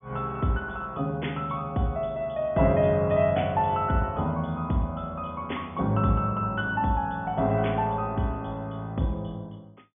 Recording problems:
treble missing; nothing above 3.5 kHz

